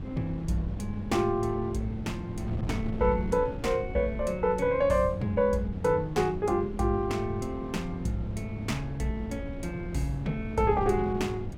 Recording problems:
wind on the microphone; below 210 Hz, SNR 10 dB

